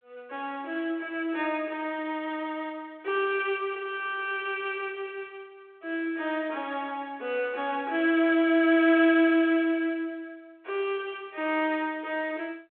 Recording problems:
telephone audio; 280 Hz to 3.6 kHz, G.726

